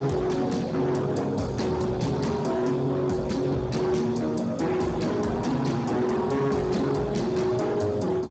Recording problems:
lossy compression; Speex, log-spectral distance 4 dB, nothing above 7.6 kHz
distorted audio; hard clipping, signal-to-distortion ratio 7 dB

